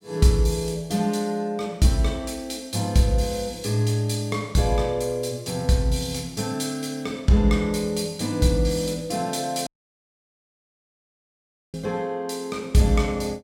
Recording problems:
audio cutting out; at 9.5 s for 2 s

